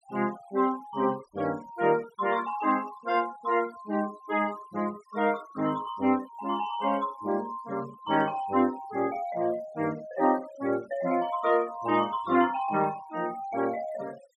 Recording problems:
denoising artefacts; signal-to-artefact ratio 22 dB

